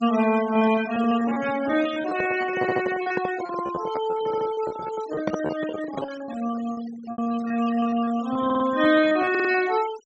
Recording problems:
treble cut off; nothing above 8 kHz
noise reduction artefacts; signal-to-artefact ratio 14 dB
lost packets; 18% of the sound replaced, filled with repeated pitch periods
handling noise; from 2 to 6 s; peak +1 dB vs average level
audio stuttering; 4 times, first at 2.5 s

